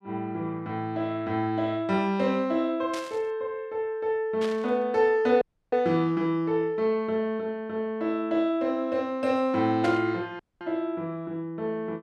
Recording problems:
static burst; at 3 s, at 4.5 s and at 10 s; peak -5 dB vs average level
dropout; at 5.5 s and at 10 s

